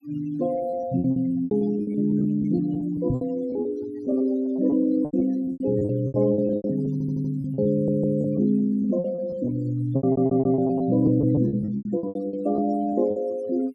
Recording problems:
denoising artefacts; signal-to-artefact ratio 22 dB
lost packets; 16% of the sound replaced, filled with repeated pitch periods
knock on the microphone; at 3 s; peak 0 dB vs average level
audio stuttering; at 7 s, at 7.5 s and at 10 s

